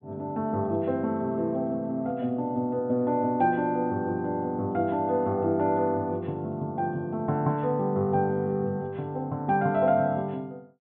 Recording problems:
treble cut off; nothing above 4 kHz

